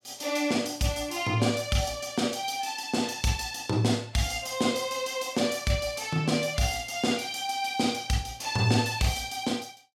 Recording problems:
none

